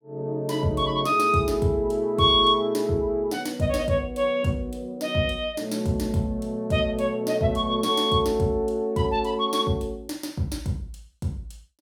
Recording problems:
none

